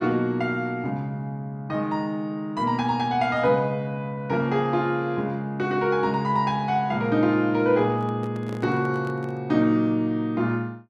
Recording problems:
microphone handling noise; from 8 to 9.5 s; peak -9 dB vs average level

